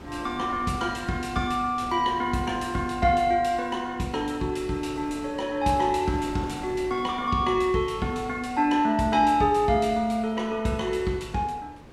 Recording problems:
wind noise; below 790 Hz, SNR 19 dB

